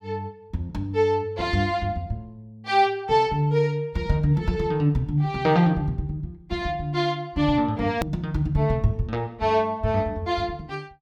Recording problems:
click at an edit; at 8 s

